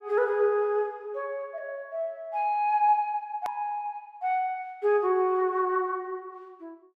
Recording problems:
edit click; at 3.5 s

